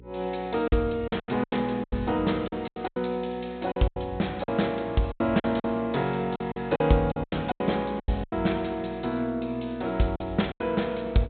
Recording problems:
treble cut off; nothing above 4 kHz
hum; 60 Hz, harmonics up to 480 Hz, SNR 21 dB
packet loss; 13% of the sound replaced, filled with silence

